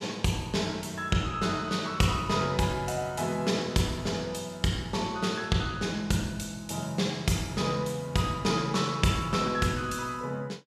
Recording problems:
none

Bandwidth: 14.5 kHz